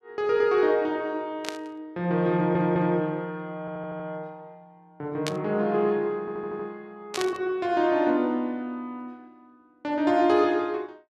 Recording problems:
burst of static; at 1.5 s, at 5.5 s and at 7 s; peak 0 dB vs average level
stutter; at 2.5 s, at 3.5 s and at 6 s

